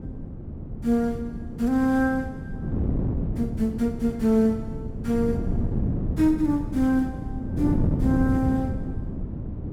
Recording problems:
wind on the microphone; below 220 Hz, SNR 5 dB

